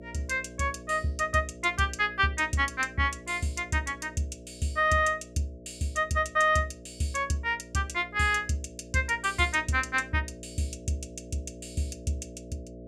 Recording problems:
hum; 60 Hz, harmonics up to 660 Hz, SNR 18 dB

